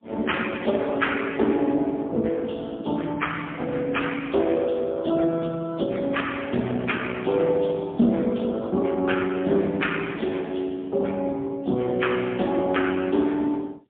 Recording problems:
telephone audio; 170 Hz to 3.5 kHz, AMR-NB, then MP3

